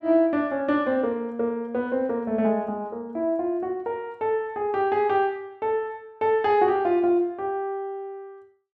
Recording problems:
none

